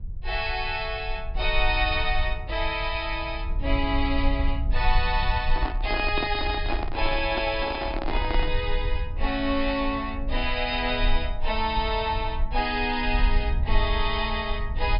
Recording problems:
treble missing; nothing above 5.5 kHz
rumble; below 52 Hz, strongest tone 20 Hz, SNR 4 dB
handling noise; from 5.5 to 8.5 s; peak +1 dB vs average level

